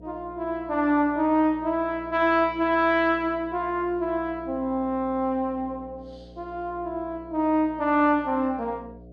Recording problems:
electrical hum; 60 Hz, harmonics up to 720 Hz, SNR 22 dB

